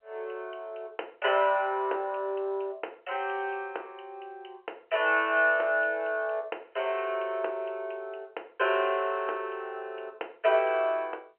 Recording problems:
telephone audio; 340 Hz to 3.1 kHz, G.711

